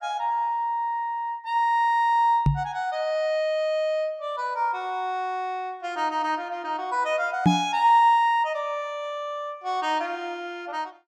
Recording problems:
microphone thump; at 2.5 s and at 7.5 s; peak +9 dB vs average level

